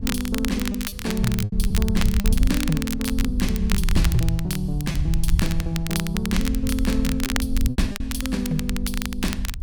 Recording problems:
wind on the microphone; below 70 Hz, SNR 2 dB
crackle; vinyl, SNR 6 dB
lost packets; 4% of the sound replaced, filled with repeated pitch periods

